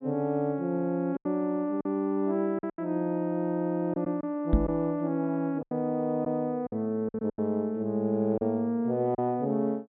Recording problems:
treble missing; nothing above 4 kHz
lost packets; 7% of the sound replaced, filled with silence
microphone bump; at 4.5 s; peak +9 dB vs average level

